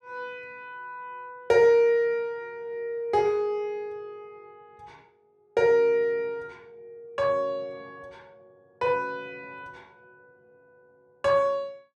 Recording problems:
none

